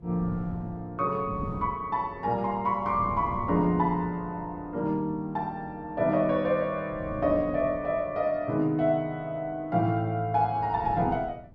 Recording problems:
wind noise; below 220 Hz, SNR 15 dB

